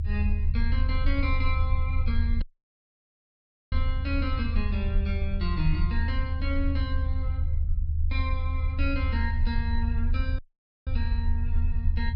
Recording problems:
rumble; below 78 Hz, strongest tone 22 Hz, SNR -6 dB
dropout; at 2.5 s for 1.5 s and at 10 s

